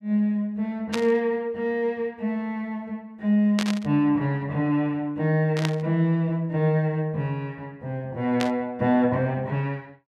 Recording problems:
static burst; 4 times, first at 1 s; peak -1 dB vs average level

